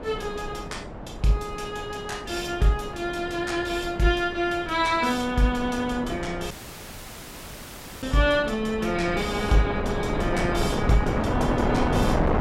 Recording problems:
wind noise; below 680 Hz, SNR 4 dB
dropout; at 6.5 s for 1.5 s

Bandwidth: 16 kHz